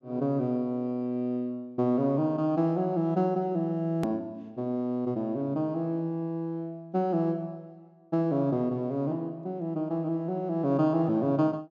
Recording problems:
low-pass filter; nothing above 8 kHz
hard cut with a click; at 4 s

